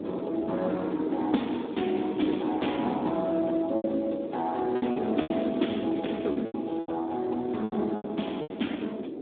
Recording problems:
phone line; 170 Hz to 3.6 kHz, Speex
wind noise; below 430 Hz, SNR 7 dB
lost packets; 8% of the sound replaced, filled with repeated pitch periods

